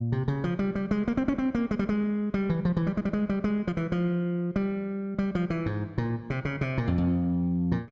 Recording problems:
none

